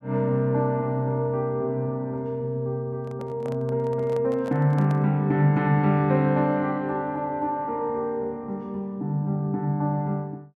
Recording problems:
microphone handling noise; from 3 to 5 s; peak -10 dB vs average level

